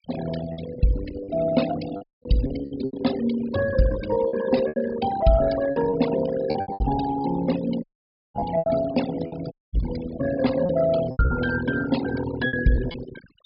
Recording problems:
treble missing; nothing above 5.5 kHz
denoising artefacts; signal-to-artefact ratio 10 dB
lost packets; 11% of the sound replaced, filled with repeated pitch periods
audio cutting out; at 2 s, at 8 s for 0.5 s and at 9.5 s

